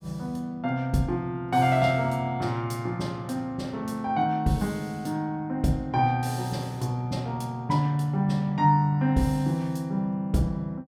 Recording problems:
none

